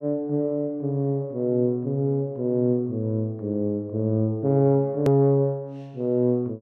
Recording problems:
click at an edit; at 5 s

